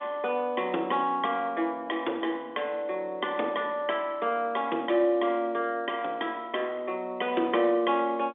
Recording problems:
phone line; 240 Hz to 3.6 kHz, G.711

